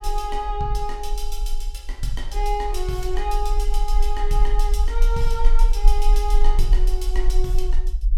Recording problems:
low-frequency rumble; below 38 Hz, strongest tone 20 Hz, SNR -4 dB

